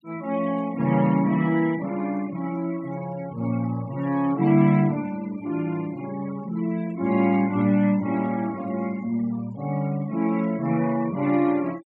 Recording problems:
denoising artefacts; signal-to-artefact ratio 22 dB

